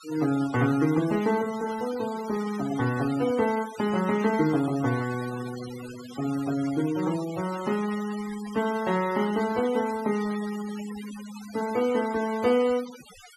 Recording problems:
noise reduction artefacts; signal-to-artefact ratio 15 dB

